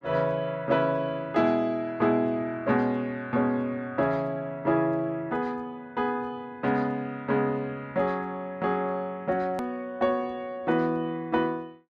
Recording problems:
edit click; at 9.5 s

